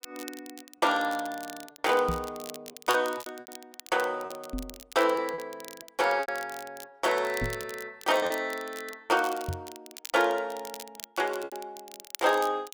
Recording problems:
crackle; vinyl, SNR 16 dB
lost packets; 6% of the sound replaced, filled with repeated pitch periods
microphone thump; 4 times, first at 2 s; peak -1 dB vs average level

